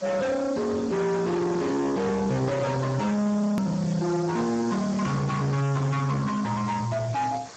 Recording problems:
lossy codec; Speex, log-spectral distance 7 dB, nothing above 13.7 kHz
distortion; hard clipping, signal-to-distortion ratio 6 dB
background hiss; SNR 18 dB
hard cut with a click; at 3.5 s

